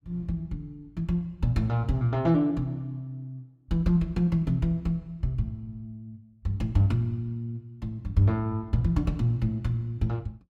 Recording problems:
none

